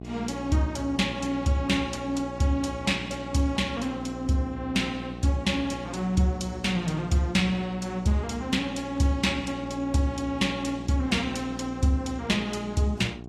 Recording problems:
codec artefacts; AAC, log-spectral distance 2 dB
electrical hum; 60 Hz, harmonics up to 1.1 kHz, SNR 12 dB

